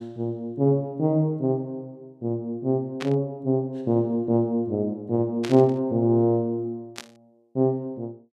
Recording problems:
static burst; at 3 s, at 5.5 s and at 7 s; peak -5 dB vs average level

